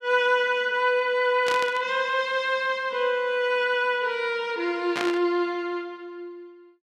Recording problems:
burst of static; at 1.5 s and at 5 s; peak -2 dB vs average level

